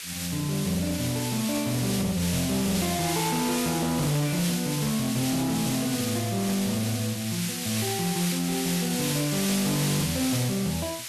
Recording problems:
distorted audio; hard clipping, uneven, signal-to-distortion ratio 10 dB
hiss; SNR 3 dB

